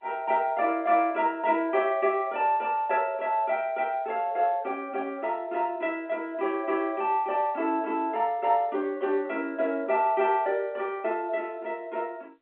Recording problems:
phone line; 240 Hz to 3.5 kHz, G.711

